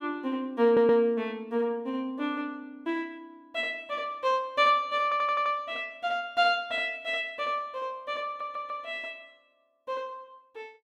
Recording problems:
audio stuttering; at 0.5 s, at 5 s and at 8.5 s

